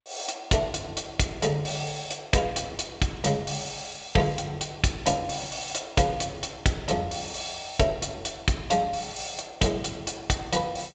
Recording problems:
lossy compression; G.722, log-spectral distance 9 dB, nothing above 7.3 kHz

